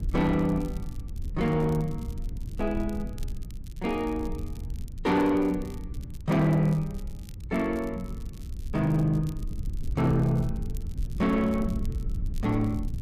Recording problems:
distortion; soft clipping, signal-to-distortion ratio 11 dB
low-frequency rumble; below 90 Hz, SNR 9 dB
crackling; vinyl, SNR 27 dB

